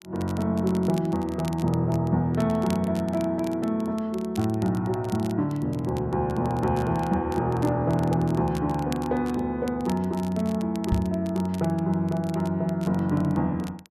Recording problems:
crackle; vinyl, SNR 22 dB
microphone thump; at 11 s; peak +4 dB vs average level

